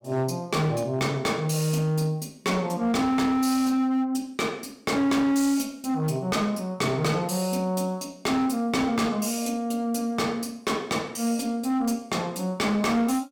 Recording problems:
distortion; hard clipping, signal-to-distortion ratio 11 dB

